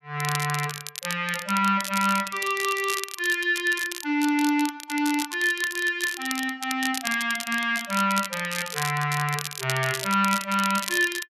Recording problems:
crackle; vinyl, SNR 8 dB

